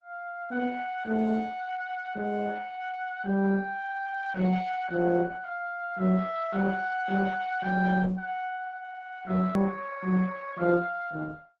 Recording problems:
lossy compression; Opus, log-spectral distance 3 dB, nothing above 13.1 kHz
edit click; at 9.5 s

